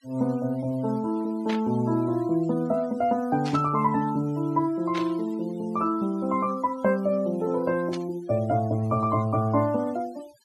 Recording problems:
noise reduction artefacts; signal-to-artefact ratio 23 dB
burst of static; 4 times, first at 1.5 s; peak -6 dB vs average level

